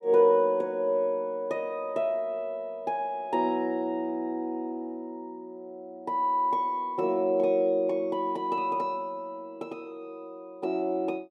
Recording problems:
none

